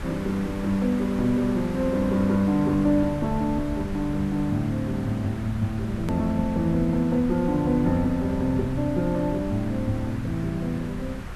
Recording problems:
hum; 50 Hz, harmonics up to 600 Hz, SNR 22 dB
background hiss; SNR 16 dB
low-frequency rumble; below 100 Hz, SNR 13 dB
click at an edit; at 6 s

